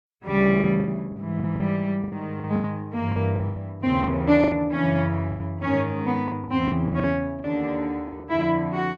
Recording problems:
packet loss; 13% of the sound replaced, filled with the last packet

